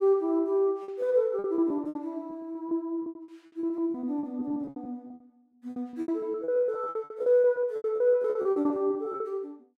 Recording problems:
lost packets; 21% of the sound replaced, filled with repeated pitch periods

